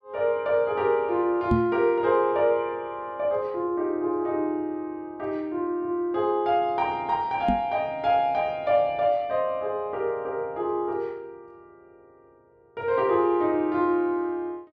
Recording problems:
microphone thump; at 1.5 s and at 7.5 s; peak +5 dB vs average level

